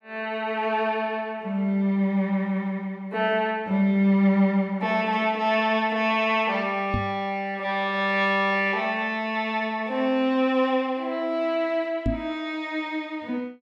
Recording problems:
microphone bump; at 7 s and at 12 s; peak +2 dB vs average level

